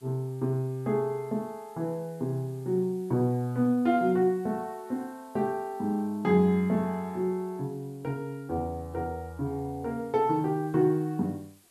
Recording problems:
background hiss; slope 0 dB per octave, SNR 30 dB

